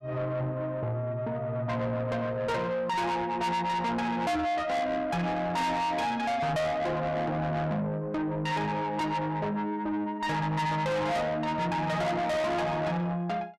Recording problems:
distorted audio; soft clipping, signal-to-distortion ratio 6 dB

